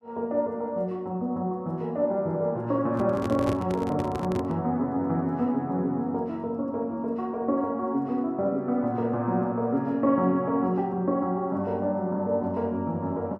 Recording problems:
microphone handling noise; from 3 to 4.5 s; peak -1 dB vs average level

